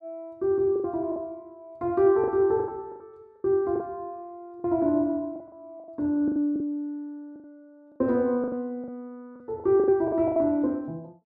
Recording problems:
lost packets; 12% of the sound replaced, filled with the last packet

